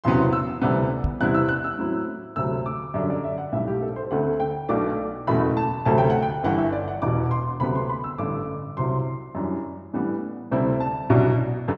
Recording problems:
microphone bump; at 1 s; peak +3 dB vs average level

